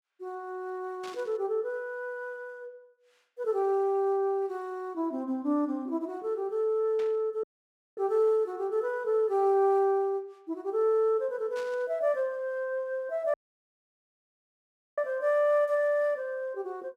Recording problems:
static burst; at 1 s, at 7 s and at 12 s; peak -13 dB vs average level
dropout; at 7.5 s for 0.5 s and at 13 s for 1.5 s

